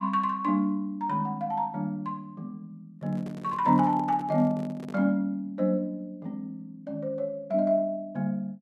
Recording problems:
microphone handling noise; from 3 to 5 s; peak -11 dB vs average level

